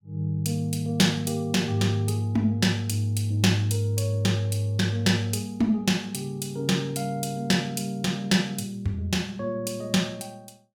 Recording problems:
none

